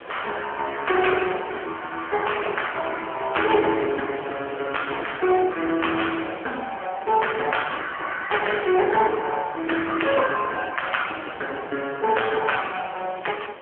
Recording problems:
phone line; 260 Hz to 3.2 kHz, AMR-NB
background hiss; SNR 17 dB
wind noise; below 1.9 kHz, SNR 22 dB

